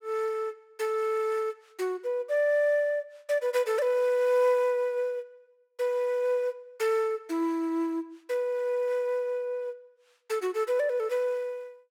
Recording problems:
none

